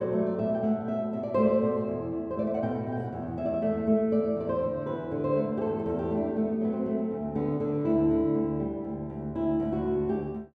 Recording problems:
none

